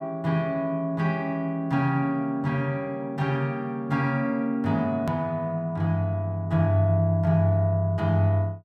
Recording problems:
edit click; at 5 s

